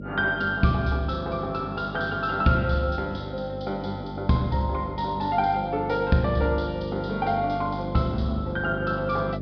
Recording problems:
treble cut off; nothing above 5.5 kHz
hum; 50 Hz, harmonics up to 600 Hz, SNR 9 dB

